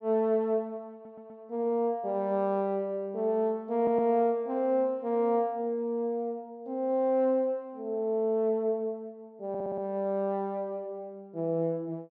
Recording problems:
audio stuttering; at 1 s, at 4 s and at 9.5 s

